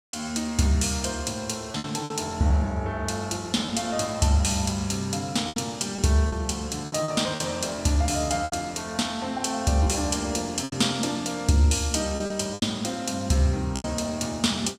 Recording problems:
lost packets; 6% of the sound replaced, filled with repeated pitch periods

